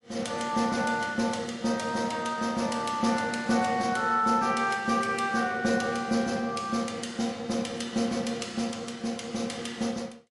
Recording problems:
codec artefacts; MP3, log-spectral distance 3 dB, nothing above 11 kHz

